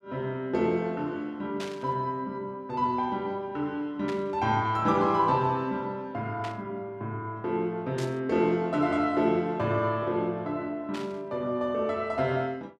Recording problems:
static burst; 5 times, first at 1.5 s; peak -6 dB vs average level

